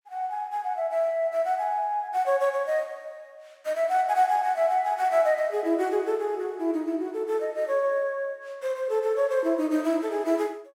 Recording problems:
none

